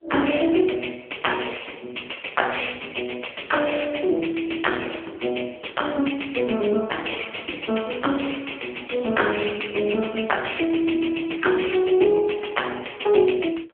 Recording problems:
telephone audio; 260 Hz to 3.3 kHz, AMR-NB

